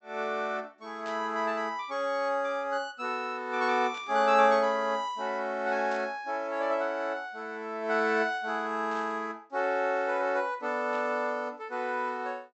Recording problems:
treble cut off; nothing above 7.8 kHz
static burst; 5 times, first at 1 s; peak -13 dB vs average level

